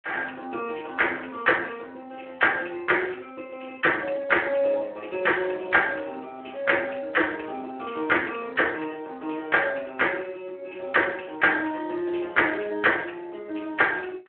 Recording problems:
phone line; 280 Hz to 3.1 kHz, Speex

